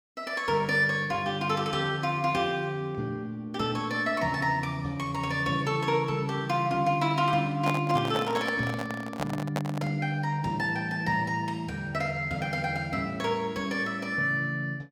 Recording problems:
handling noise; from 7.5 to 10 s; peak +1 dB vs average level

